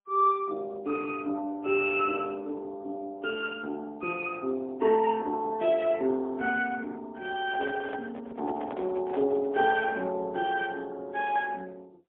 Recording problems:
phone line; 240 Hz to 3.5 kHz, AMR-NB, then MP3
microphone handling noise; from 7.5 to 10 s; peak -5 dB vs average level

